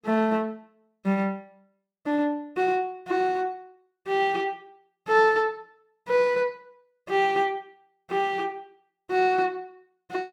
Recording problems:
none

